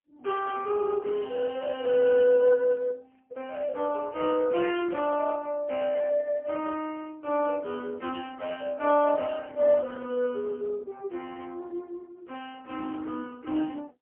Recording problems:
telephone audio; 280 Hz to 2.8 kHz, AMR-NB, then MP3
burst of static; at 1.5 s, at 3.5 s and at 5 s; peak -20 dB vs average level

